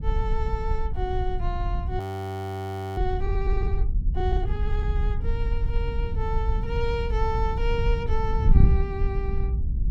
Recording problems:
wind on the microphone; below 72 Hz, SNR -5 dB
frozen audio; at 2 s for 1 s

